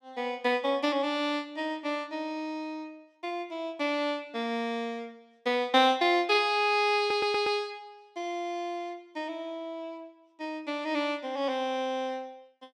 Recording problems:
audio stuttering; at 7 s

